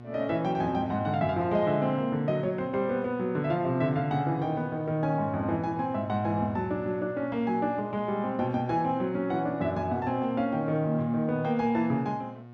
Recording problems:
electrical hum; 60 Hz, harmonics up to 1.4 kHz, SNR 17 dB

